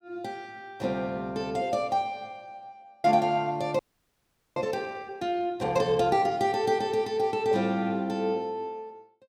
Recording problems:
frozen audio; at 4 s for 1 s

